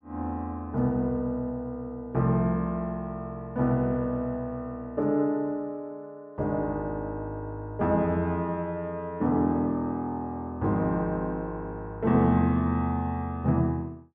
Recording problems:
none

